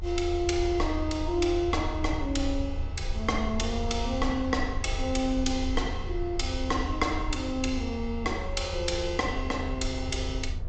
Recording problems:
treble cut off; nothing above 8 kHz
rumble; below 80 Hz, SNR 5 dB

